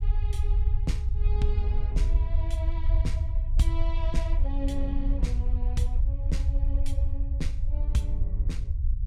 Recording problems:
rumble; below 66 Hz, SNR -8 dB

